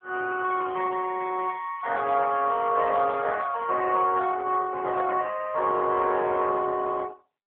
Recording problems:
phone line; 280 Hz to 2.8 kHz, AMR-NB

